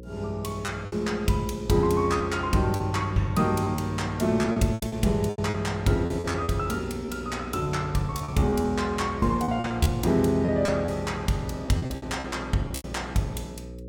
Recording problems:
hum; 60 Hz, harmonics up to 540 Hz, SNR 14 dB
packet loss; 10% of the sound replaced, filled with repeated pitch periods

